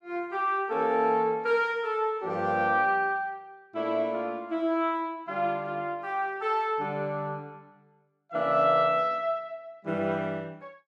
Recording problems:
none

